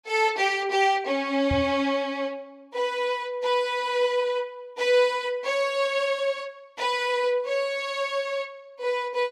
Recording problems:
knock on the microphone; at 1.5 s; peak 0 dB vs average level

